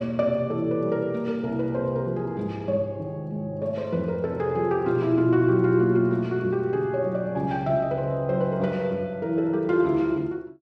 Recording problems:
none

